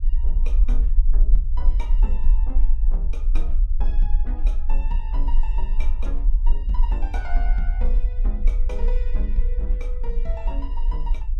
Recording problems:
low-frequency rumble; below 40 Hz, SNR -14 dB

